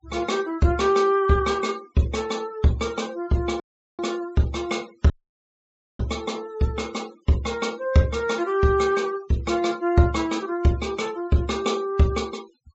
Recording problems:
treble cut off; nothing above 7.8 kHz
noise reduction artefacts; signal-to-artefact ratio 23 dB
dropout; at 3.5 s and at 5 s for 1 s

